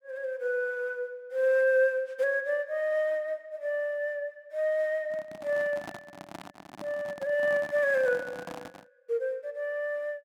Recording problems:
microphone handling noise; from 5 to 9 s; peak -6 dB vs average level

